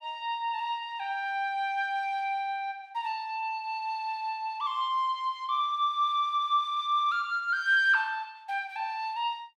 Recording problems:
none

